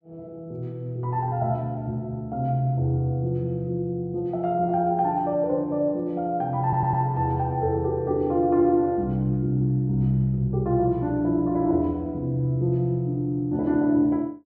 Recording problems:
stutter; at 6.5 s

